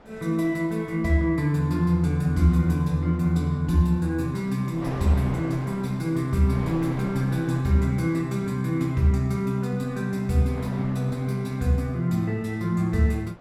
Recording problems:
wind on the microphone; below 930 Hz, SNR 19 dB

